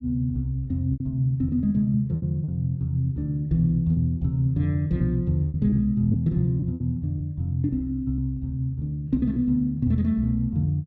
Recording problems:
packet loss; 5% of the sound replaced, filled with repeated pitch periods

